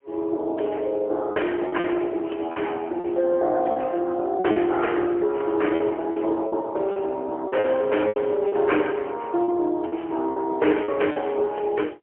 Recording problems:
telephone audio; 280 Hz to 3.3 kHz, AMR-NB, then MP3
lost packets; 7% of the sound replaced, filled with repeated pitch periods

